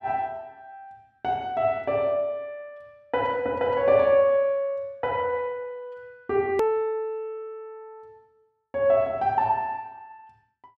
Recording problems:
hard cut with a click; at 6.5 s

